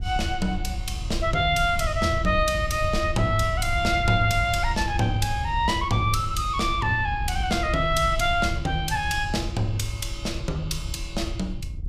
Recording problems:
wind noise; below 92 Hz, SNR 7 dB

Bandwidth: 15.5 kHz